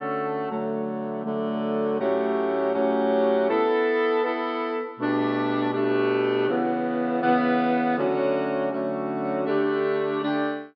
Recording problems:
treble missing; nothing above 5.5 kHz

